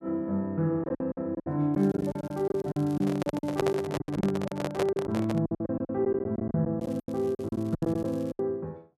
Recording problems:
packet loss; 16% of the sound replaced, filled with silence
crackling; from 1.5 to 4 s and from 7 to 8.5 s; loose cable, SNR 26 dB
handling noise; from 3 to 5.5 s; peak +4 dB vs average level

